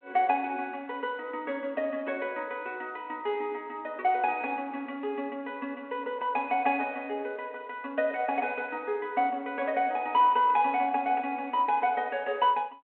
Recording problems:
telephone audio; 240 Hz to 3.7 kHz, G.726

